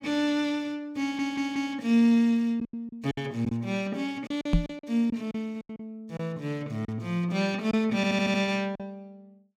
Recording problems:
lost packets; 7% of the sound replaced, filled with silence
audio stuttering; at 1 s and at 8 s
knock on the microphone; at 4.5 s; peak +8 dB vs average level

